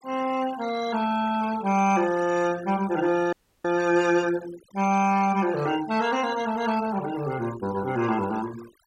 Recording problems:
denoising artefacts; signal-to-artefact ratio 16 dB
dropout; at 3.5 s

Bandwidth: 16 kHz